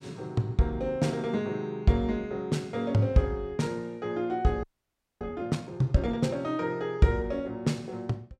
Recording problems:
audio freezing; at 4.5 s for 0.5 s

